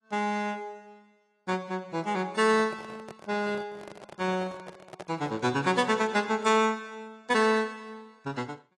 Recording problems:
codec artefacts; AAC, log-spectral distance 3 dB
handling noise; from 2.5 to 5.5 s; peak -11 dB vs average level

